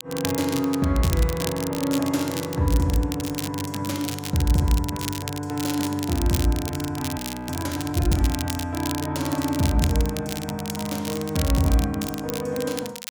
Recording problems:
crackle; vinyl, SNR 9 dB
audio freezing; at 7 s

